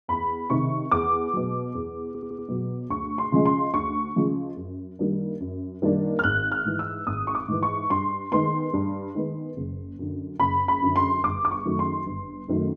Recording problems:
audio stuttering; at 2 s

